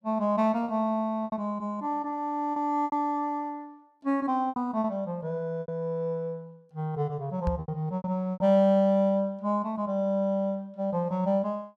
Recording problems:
packet loss; 6% of the sound replaced, filled with repeated pitch periods
knock on the microphone; at 7.5 s; peak +1 dB vs average level

